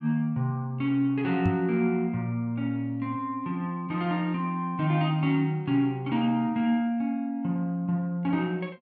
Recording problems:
knock on the microphone; at 1.5 s; peak +3 dB vs average level

